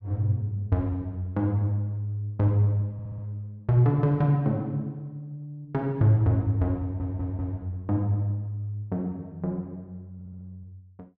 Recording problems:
stutter; at 3 s, at 7 s and at 10 s

